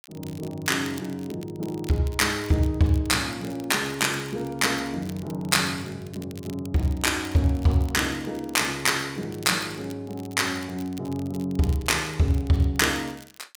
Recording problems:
crackle; vinyl, SNR 22 dB

